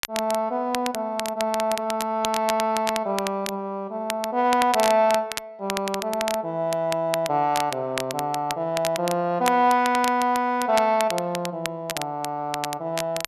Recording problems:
crackling; vinyl, SNR 9 dB

